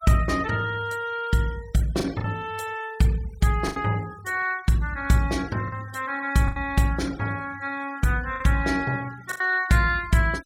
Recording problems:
denoising artefacts; signal-to-artefact ratio 22 dB
lost packets; 4% of the sound replaced, filled with the last packet

